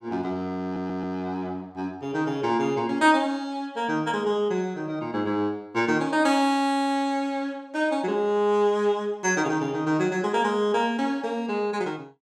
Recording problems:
stutter; at 0.5 s

